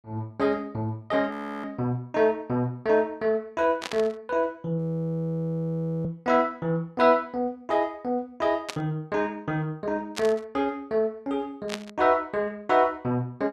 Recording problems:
frozen audio; at 1.5 s and at 5 s for 1.5 s
static burst; 4 times, first at 4 s; peak -1 dB vs average level

